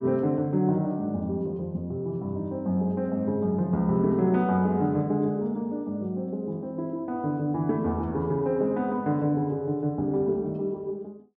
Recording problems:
none

